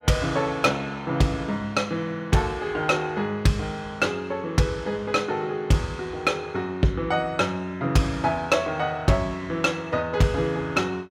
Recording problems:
distorted audio; hard clipping, signal-to-distortion ratio 11 dB

